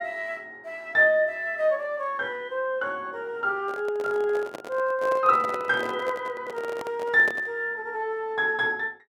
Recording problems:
handling noise; from 3.5 to 7.5 s; peak -4 dB vs average level

